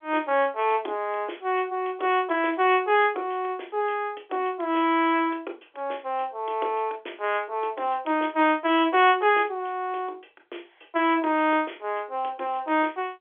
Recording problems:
phone line; 280 Hz to 3.5 kHz, G.711

